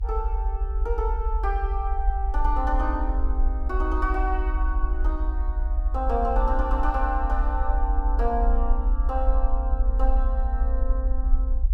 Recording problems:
rumble; below 54 Hz, strongest tone 38 Hz, SNR -4 dB

